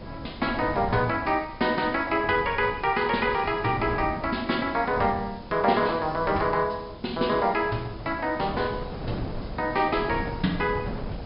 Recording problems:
treble cut off; nothing above 5.5 kHz
hiss; SNR 27 dB
wind on the microphone; below 500 Hz, SNR 12 dB

